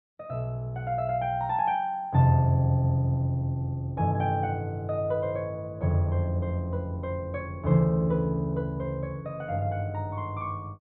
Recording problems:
low-pass filter; nothing above 4 kHz

